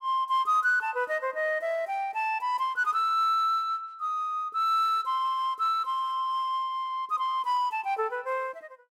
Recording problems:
none

